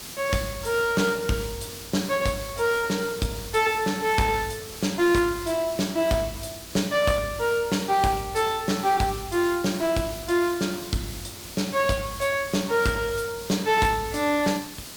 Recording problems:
distortion; hard clipping, uneven, signal-to-distortion ratio 11 dB
background hiss; SNR 13 dB

